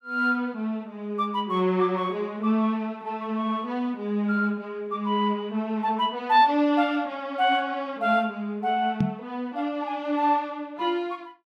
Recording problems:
microphone bump; at 9 s; peak +5 dB vs average level

